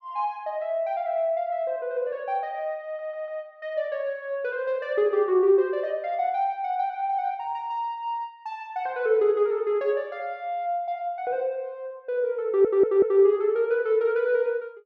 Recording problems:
stutter; at 3 s and at 12 s

